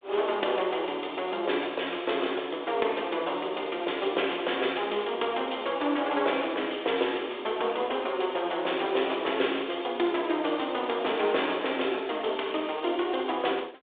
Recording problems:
phone line; 300 Hz to 3.6 kHz, G.726

